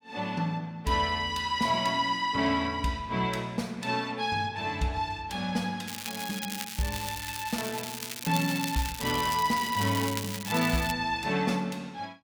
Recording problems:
crackling; from 6 to 11 s; loose cable, SNR 7 dB

